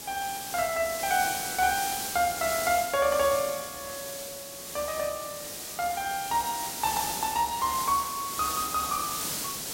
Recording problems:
background hiss; SNR 4 dB

